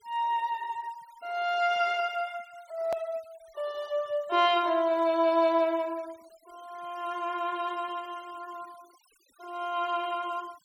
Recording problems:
denoising artefacts; signal-to-artefact ratio 26 dB
click at an edit; at 3 s

